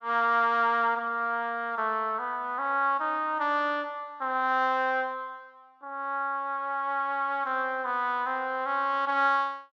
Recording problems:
none

